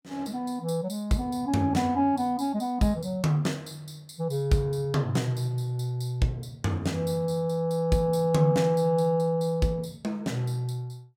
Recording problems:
none

